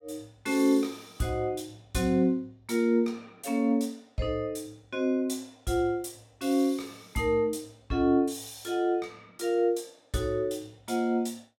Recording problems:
none

